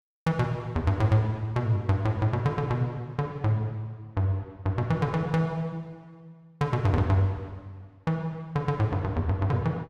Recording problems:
none

